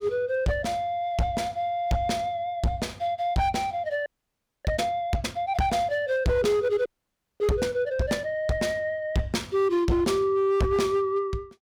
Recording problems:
distorted audio; hard clipping, uneven, signal-to-distortion ratio 11 dB
frozen audio; at 4 s for 0.5 s and at 7 s for 0.5 s

